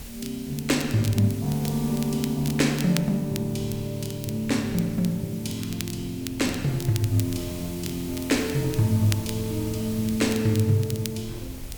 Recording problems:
hiss; SNR 16 dB
wind on the microphone; below 130 Hz, SNR 20 dB
crackle; vinyl, SNR 14 dB

